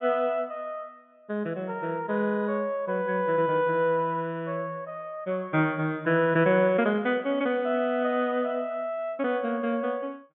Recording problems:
treble missing; nothing above 3.6 kHz

